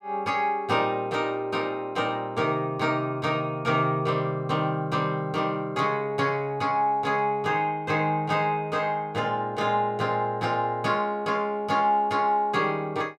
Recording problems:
none

